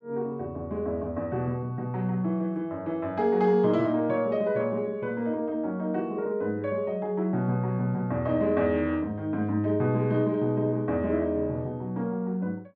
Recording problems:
none

